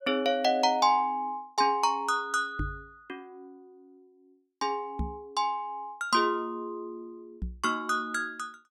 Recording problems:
knock on the microphone; at 2.5 s, at 5 s and at 7.5 s; peak -1 dB vs average level

